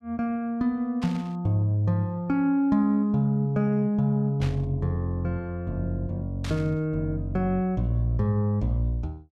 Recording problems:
burst of static; at 1 s, at 4.5 s and at 6.5 s; peak -9 dB vs average level

